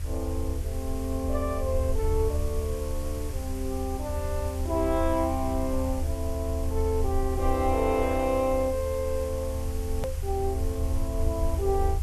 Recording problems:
background hiss; slope -1 dB per octave, SNR 15 dB
low-frequency rumble; below 78 Hz, SNR 2 dB
click at an edit; at 10 s

